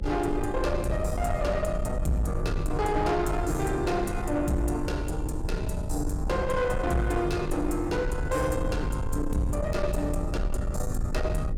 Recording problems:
distorted audio; soft clipping, signal-to-distortion ratio 11 dB
hum; 50 Hz, harmonics up to 550 Hz, SNR 10 dB
rumble; below 84 Hz, SNR 5 dB

